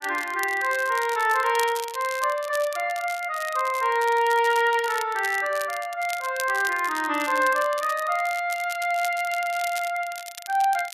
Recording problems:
crackle; vinyl, SNR 15 dB

